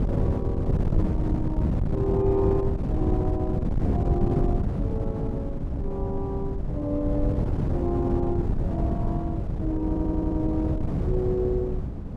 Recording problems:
wind on the microphone; below 180 Hz, SNR -3 dB
stutter; at 10 s

